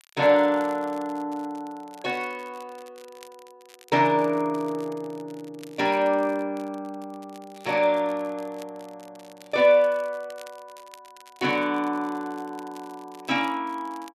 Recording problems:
crackling; vinyl, SNR 27 dB

